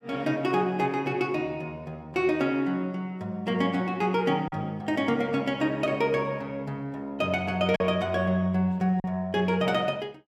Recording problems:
lost packets; 1.2% of the sound replaced, filled with silence

